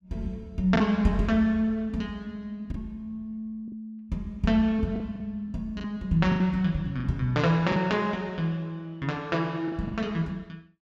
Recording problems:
lost packets; 5% of the sound replaced, filled with the last packet

